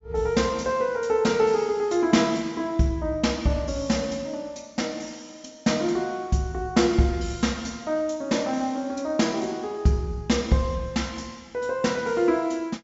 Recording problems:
low-pass filter; nothing above 8 kHz

